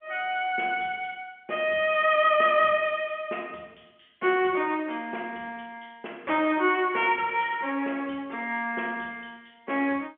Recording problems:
telephone audio; 190 Hz to 3.3 kHz, G.711

